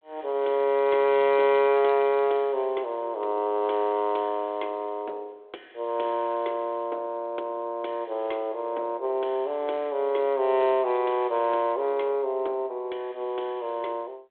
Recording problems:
phone line; 320 Hz to 3.6 kHz, G.726

